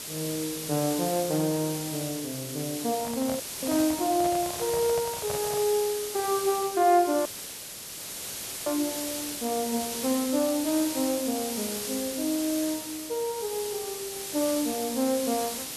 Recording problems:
background hiss; SNR 5 dB
microphone handling noise; from 3 to 5.5 s; peak -4 dB vs average level
dropout; at 3.5 s and at 7.5 s for 1.5 s

